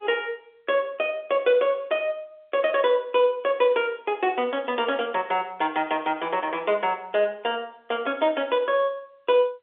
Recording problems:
phone line; 320 Hz to 3.6 kHz, G.711

